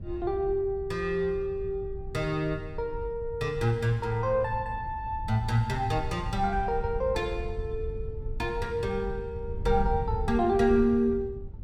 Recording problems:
wind on the microphone; below 88 Hz, SNR 9 dB

